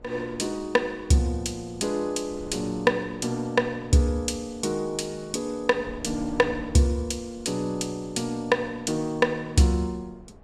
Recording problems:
wind noise; below 430 Hz, SNR 21 dB

